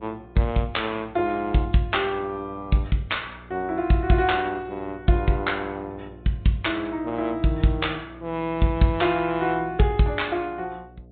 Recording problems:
treble missing; nothing above 3.9 kHz
lossy codec; MP3, log-spectral distance 2 dB
electrical hum; 60 Hz, harmonics up to 720 Hz, SNR 22 dB

